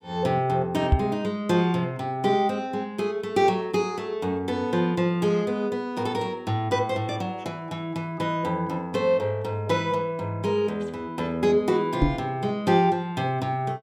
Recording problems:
microphone thump; at 1 s and at 12 s; peak +9 dB vs average level

